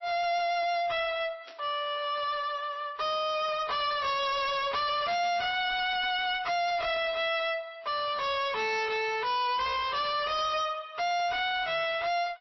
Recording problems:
lossy codec; MP3, log-spectral distance 4 dB, nothing above 5.7 kHz
distortion; soft clipping, signal-to-distortion ratio 6 dB
burst of static; at 1.5 s; peak -15 dB vs average level

